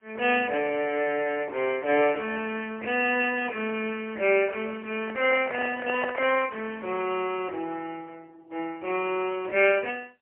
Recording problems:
phone line; 340 Hz to 3.1 kHz, AMR-NB, then MP3
microphone handling noise; from 5 to 6.5 s; peak +1 dB vs average level

